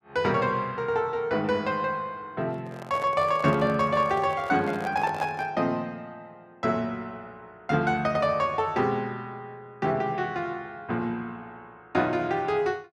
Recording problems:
microphone handling noise; from 2.5 to 5.5 s; peak -6 dB vs average level

